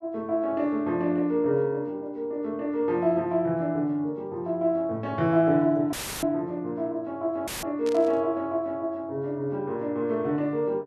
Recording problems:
audio cutting out; at 6 s and at 7.5 s; filled with static
static burst; at 8 s; peak -10 dB vs average level

